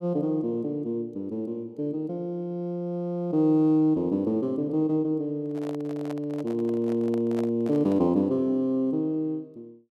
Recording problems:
handling noise; from 5.5 to 8 s; peak -8 dB vs average level

